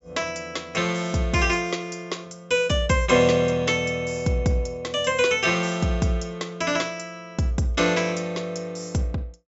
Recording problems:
treble missing; nothing above 8 kHz

